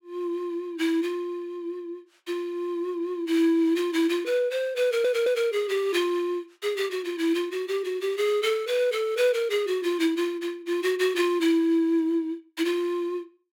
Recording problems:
audio stuttering; at 5 s

